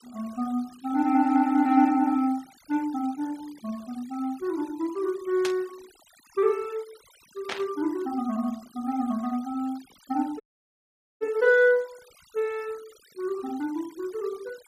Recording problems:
denoising artefacts; signal-to-artefact ratio 24 dB
static burst; at 5.5 s and at 7.5 s; peak -1 dB vs average level
dropout; at 10 s for 1 s

